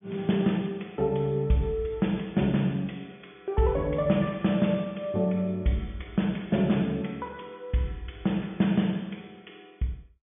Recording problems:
treble cut off; nothing above 3.5 kHz

